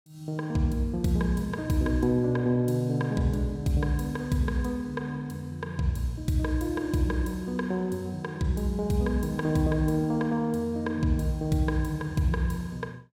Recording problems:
none

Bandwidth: 17 kHz